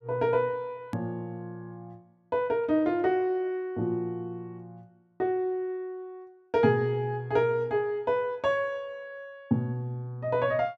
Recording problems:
edit click; at 1 s

